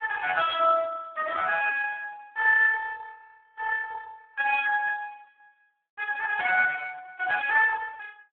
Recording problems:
telephone audio; 900 Hz to 3.3 kHz, Speex

